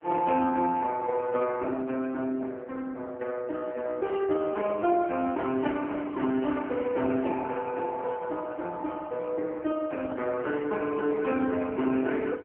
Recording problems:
phone line; 220 Hz to 3.2 kHz, AMR-NB

